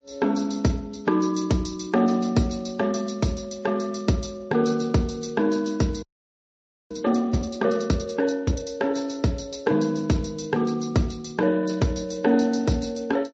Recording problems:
codec artefacts; Speex, then MP3, log-spectral distance 4 dB
frozen audio; at 6 s for 1 s

